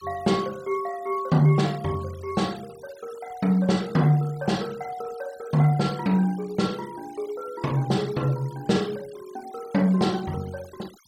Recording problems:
noise reduction artefacts; signal-to-artefact ratio 23 dB

